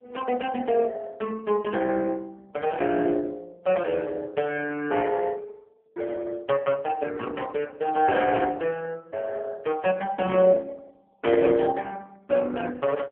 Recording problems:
phone line; 190 Hz to 3.1 kHz, AMR-NB

